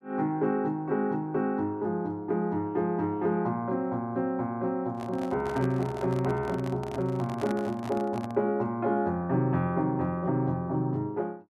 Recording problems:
microphone handling noise; from 5 to 8.5 s; peak -4 dB vs average level

